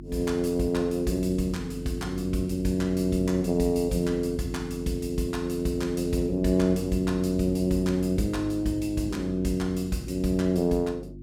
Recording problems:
electrical hum; 50 Hz, harmonics up to 350 Hz, SNR 12 dB

